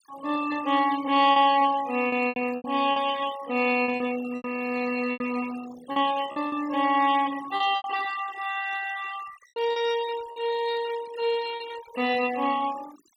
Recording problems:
noise reduction artefacts; signal-to-artefact ratio 16 dB
lost packets; 7% of the sound replaced, filled with repeated pitch periods

